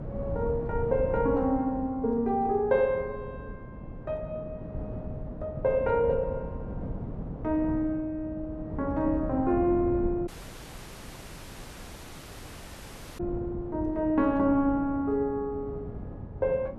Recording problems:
wind on the microphone; below 240 Hz, SNR 10 dB
audio cutting out; at 10 s for 3 s

